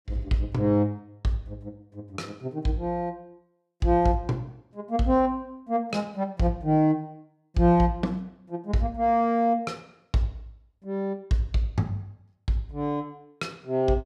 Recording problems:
none

